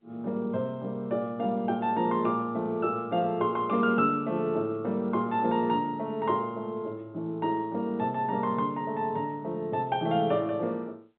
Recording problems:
phone line; 130 Hz to 3.8 kHz, G.711

